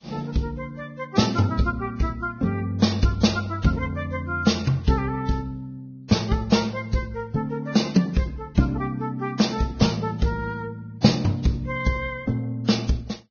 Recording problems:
lossy codec; Vorbis, log-spectral distance 3 dB, nothing above 6.5 kHz

